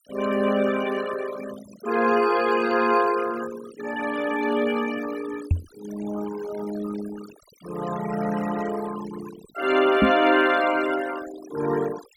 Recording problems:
noise reduction artefacts; signal-to-artefact ratio 13 dB
knock on the microphone; at 5.5 s and at 10 s; peak +8 dB vs average level

